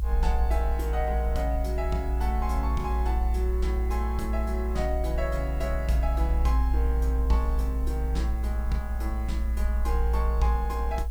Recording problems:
background hiss; SNR 22 dB
rumble; below 60 Hz, strongest tone 58 Hz, SNR -4 dB

